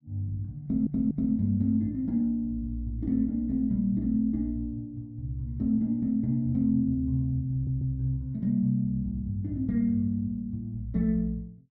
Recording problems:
stutter; at 0.5 s and at 7.5 s

